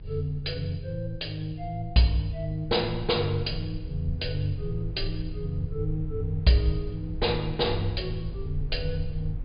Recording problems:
low-pass filter; nothing above 5 kHz
low-frequency rumble; below 64 Hz, SNR 10 dB

